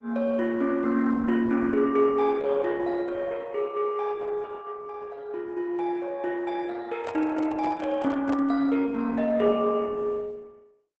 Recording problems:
codec artefacts; Opus, log-spectral distance 3 dB, nothing above 7.6 kHz
handling noise; from 7 to 8.5 s; peak -5 dB vs average level

